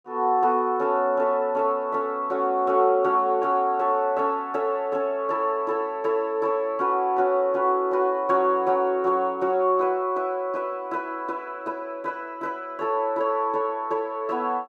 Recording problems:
none

